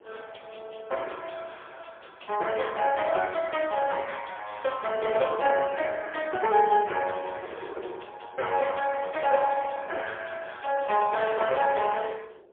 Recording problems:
phone line; 340 Hz to 3.3 kHz, AMR-NB, then MP3
wind noise; below 560 Hz, SNR 20 dB

